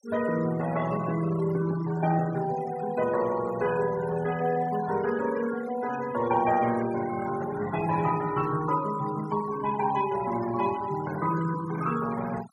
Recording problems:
denoising artefacts; signal-to-artefact ratio 14 dB

